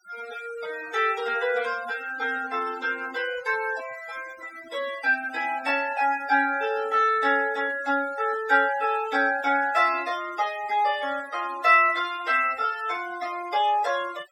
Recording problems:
noise reduction artefacts; signal-to-artefact ratio 19 dB

